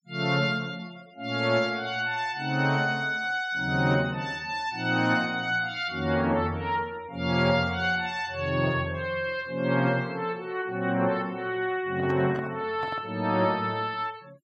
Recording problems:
denoising artefacts; signal-to-artefact ratio 26 dB
handling noise; from 12 to 13 s; peak -7 dB vs average level

